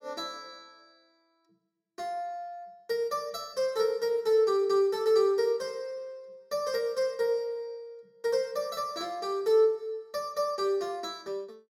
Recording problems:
none

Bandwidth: 16.5 kHz